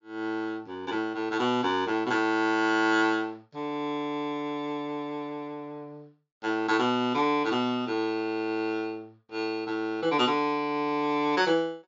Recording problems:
treble cut off; nothing above 7.2 kHz

